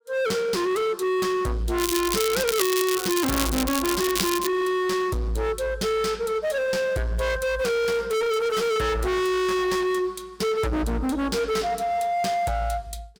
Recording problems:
distorted audio; hard clipping, signal-to-distortion ratio 6 dB
crackle; from 2 to 4.5 s; loose cable, SNR 3 dB

